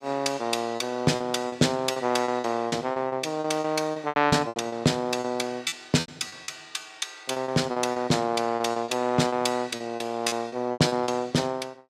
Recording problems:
packet loss; 14% of the sound replaced, filled with repeated pitch periods

